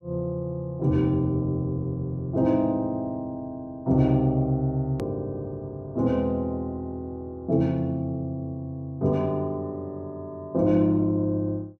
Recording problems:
edit click; at 5 s

